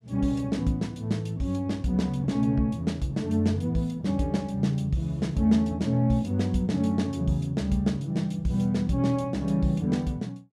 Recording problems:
none

